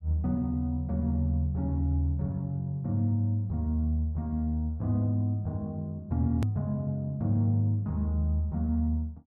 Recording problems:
edit click; at 6.5 s

